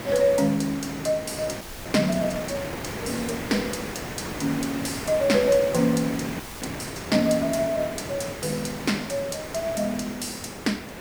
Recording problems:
hiss; SNR 8 dB
audio freezing; at 1.5 s and at 6.5 s

